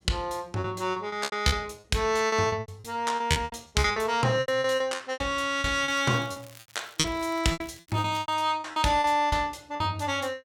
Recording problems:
packet loss; 16% of the sound replaced, filled with repeated pitch periods
crackle; from 6 to 8.5 s; loose cable, SNR 24 dB

